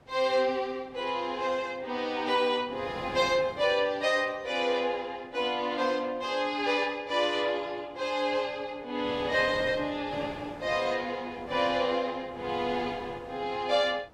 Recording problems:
wind noise; below 840 Hz, SNR 19 dB

